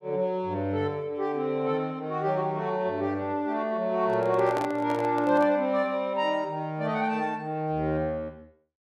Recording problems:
handling noise; from 4 to 5.5 s; peak -3 dB vs average level

